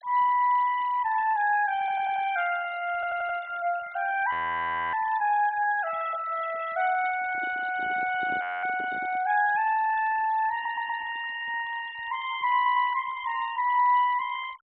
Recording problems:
treble missing; nothing above 4 kHz
denoising artefacts; signal-to-artefact ratio 18 dB
audio stuttering; 4 times, first at 2 s
audio freezing; at 4.5 s for 0.5 s and at 8.5 s
handling noise; from 7 to 9 s; peak -11 dB vs average level

